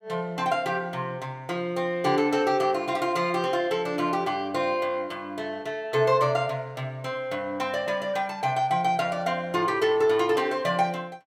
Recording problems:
none

